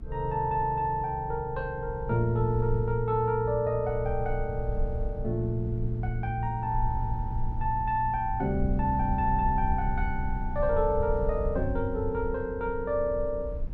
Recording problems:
hum; 60 Hz, harmonics up to 360 Hz, SNR 17 dB
low-frequency rumble; below 62 Hz, SNR 8 dB

